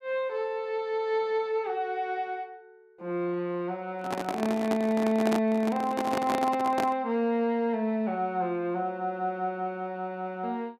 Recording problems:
handling noise; from 4 to 7 s; peak +2 dB vs average level

